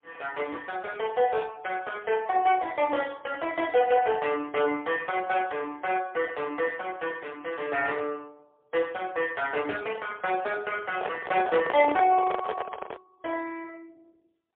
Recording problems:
telephone audio; 340 Hz to 3.5 kHz, AMR-NB, then MP3
microphone handling noise; from 11 to 13 s; peak +1 dB vs average level

